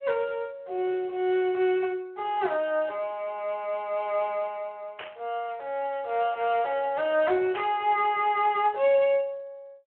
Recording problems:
telephone audio; 320 Hz to 3.2 kHz, Speex
static burst; at 5 s and at 7.5 s; peak -5 dB vs average level

